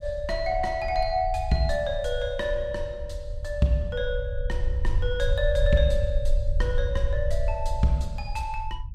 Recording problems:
low-frequency rumble; below 64 Hz, SNR 3 dB

